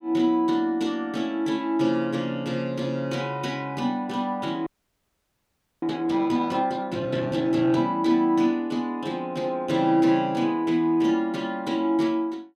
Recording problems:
frozen audio; at 4.5 s for 1 s

